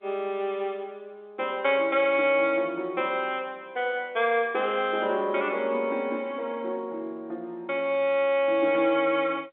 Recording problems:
telephone audio; 320 Hz to 3.6 kHz, G.711

